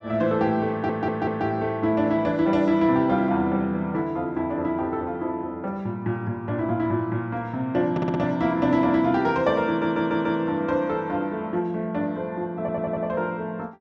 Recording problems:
stutter; 4 times, first at 0.5 s

